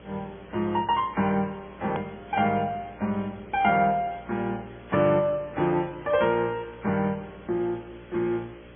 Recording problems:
treble missing; nothing above 2.8 kHz
codec artefacts; MP3, then AAC, log-spectral distance 6 dB
hum; 60 Hz, harmonics up to 600 Hz, SNR 22 dB
background hiss; SNR 26 dB
edit click; at 2 s

